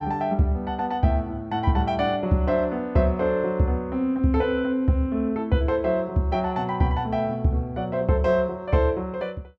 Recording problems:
none

